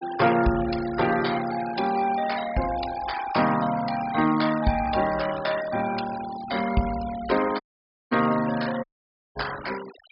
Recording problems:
treble missing; nothing above 5.5 kHz
denoising artefacts; signal-to-artefact ratio 14 dB
audio cutting out; at 7.5 s for 0.5 s and at 9 s for 0.5 s

